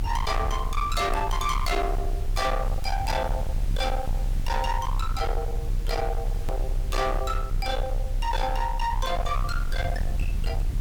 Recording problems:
distortion; hard clipping, signal-to-distortion ratio 8 dB
hiss; slope -1 dB per octave, SNR 19 dB
rumble; below 78 Hz, strongest tone 34 Hz, SNR 1 dB
edit click; at 6.5 s

